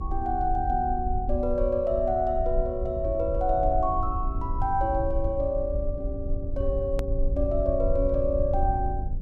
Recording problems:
electrical hum; 50 Hz, harmonics up to 600 Hz, SNR 20 dB
rumble; below 64 Hz, SNR 5 dB
hard cut with a click; at 7 s

